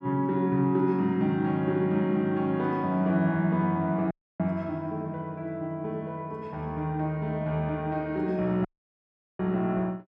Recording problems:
dropout; at 4 s and at 8.5 s for 0.5 s

